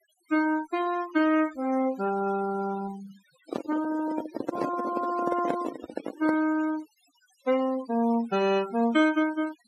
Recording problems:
denoising artefacts; signal-to-artefact ratio 16 dB
microphone handling noise; from 3.5 to 6.5 s; peak +2 dB vs average level

